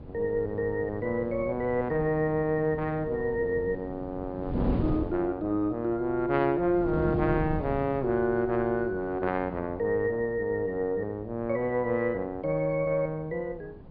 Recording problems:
low-pass filter; nothing above 5.1 kHz
wind on the microphone; below 290 Hz, SNR 11 dB

